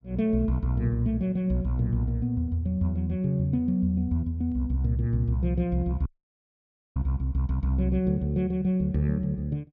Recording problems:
audio cutting out; at 6 s for 1 s

